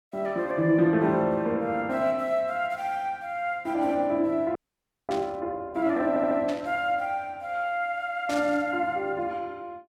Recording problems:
audio freezing; at 4.5 s for 0.5 s
static burst; at 5 s, at 6.5 s and at 8.5 s; peak -7 dB vs average level
stutter; at 6 s

